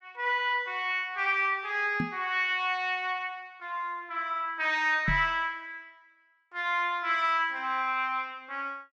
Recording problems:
microphone thump; at 2 s and at 5 s; peak +1 dB vs average level

